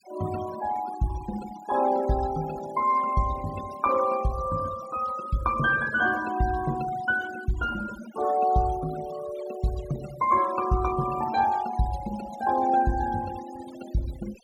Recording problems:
denoising artefacts; signal-to-artefact ratio 16 dB

